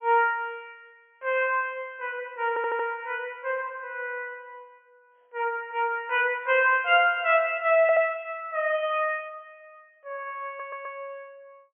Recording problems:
low-pass filter; nothing above 3.2 kHz
audio stuttering; at 2.5 s, at 8 s and at 10 s

